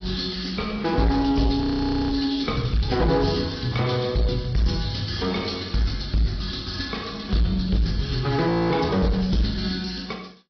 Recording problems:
treble missing; nothing above 5.2 kHz
codec artefacts; AAC, log-spectral distance 7 dB
distortion; soft clipping, signal-to-distortion ratio 11 dB
audio freezing; at 1.5 s for 0.5 s and at 8.5 s

